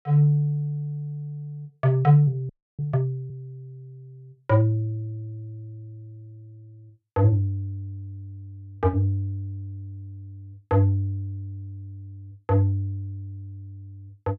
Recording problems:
frozen audio; at 2.5 s

